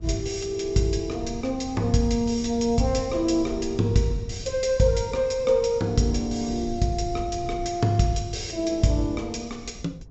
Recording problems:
treble missing; nothing above 7.7 kHz
wind noise; below 130 Hz, SNR 15 dB

